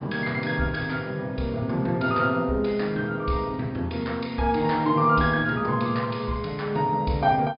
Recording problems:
low-pass filter; nothing above 5 kHz

